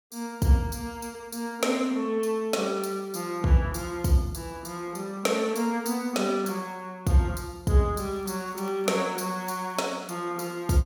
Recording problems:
crackling; from 8 to 10 s; loose cable, SNR 29 dB

